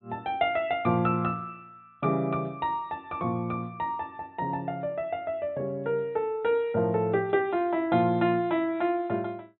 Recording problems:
low-pass filter; nothing above 4 kHz

